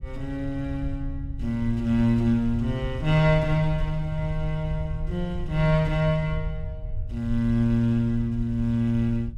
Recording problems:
low-frequency rumble; below 76 Hz, SNR 10 dB

